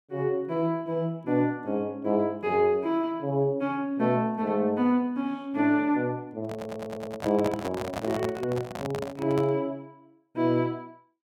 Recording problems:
handling noise; from 6.5 to 9.5 s; peak -1 dB vs average level
audio stuttering; at 6.5 s

